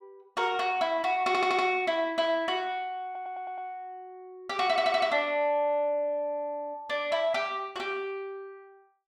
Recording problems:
stutter; at 1.5 s, at 3 s and at 4.5 s

